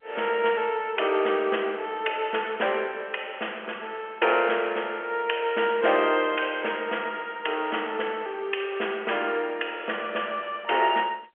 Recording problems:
telephone audio; 340 Hz to 3.3 kHz, G.711

